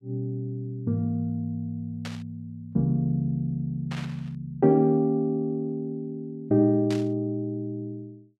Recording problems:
burst of static; at 2 s, at 4 s and at 7 s; peak -7 dB vs average level

